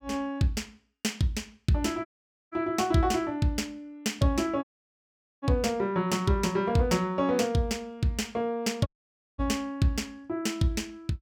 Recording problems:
dropout; at 2 s, at 4.5 s for 1 s and at 9 s for 0.5 s

